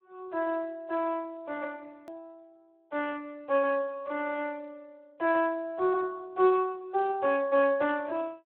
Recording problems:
phone line; 300 Hz to 3.6 kHz, Speex
click at an edit; at 2 s

